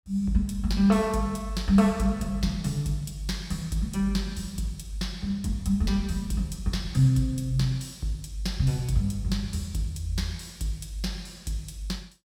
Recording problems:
none

